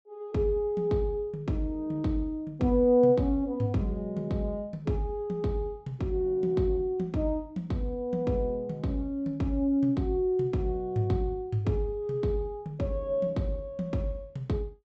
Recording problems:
treble missing; nothing above 8 kHz

